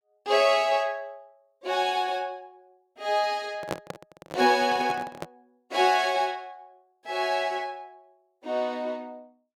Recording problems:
handling noise; from 3.5 to 5.5 s; peak 0 dB vs average level

